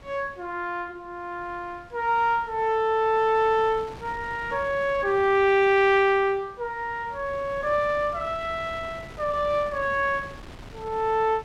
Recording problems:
wind on the microphone; below 1.1 kHz, SNR 20 dB

